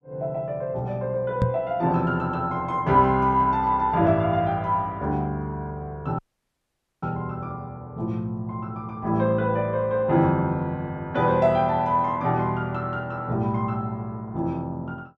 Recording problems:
knock on the microphone; at 1.5 s; peak +4 dB vs average level
audio cutting out; at 6 s for 1 s

